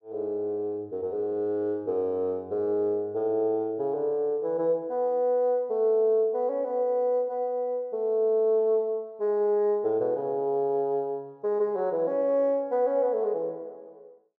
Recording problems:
none

